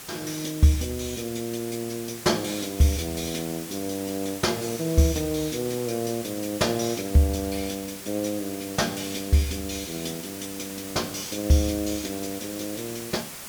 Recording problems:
hiss; slope -1 dB per octave, SNR 10 dB

